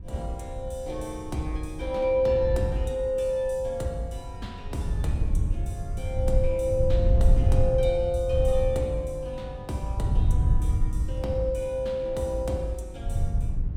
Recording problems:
wind noise; below 90 Hz, SNR 0 dB

